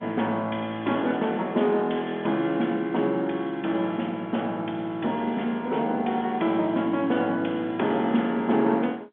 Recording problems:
telephone audio; 170 Hz to 3.5 kHz, G.711

